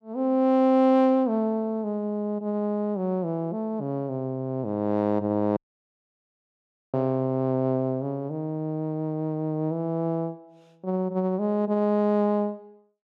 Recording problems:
dropout; at 5.5 s for 1.5 s

